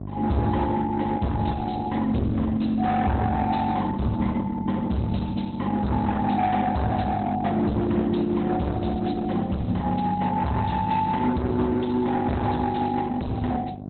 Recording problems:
codec artefacts; Opus, log-spectral distance 4 dB, nothing above 4.1 kHz
distortion; hard clipping, signal-to-distortion ratio 7 dB
electrical hum; 50 Hz, harmonics up to 800 Hz, SNR 10 dB

